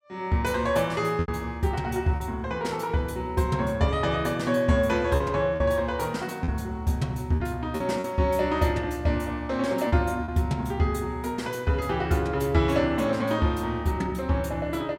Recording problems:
packet loss; 3% of the sound replaced, filled with repeated pitch periods

